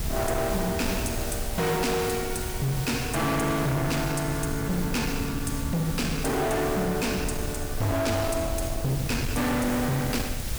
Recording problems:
distorted audio; hard clipping, signal-to-distortion ratio 6 dB
hiss; SNR 9 dB
rumble; below 140 Hz, SNR 8 dB

